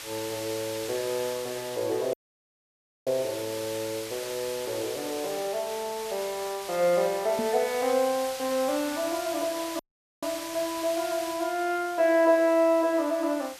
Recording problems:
background hiss; slope +1 dB per octave, SNR 10 dB
dropout; at 2 s for 1 s and at 10 s
microphone thump; at 7.5 s; peak -1 dB vs average level

